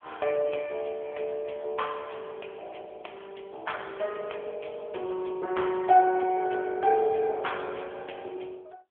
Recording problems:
phone line; 300 Hz to 3.4 kHz, AMR-NB

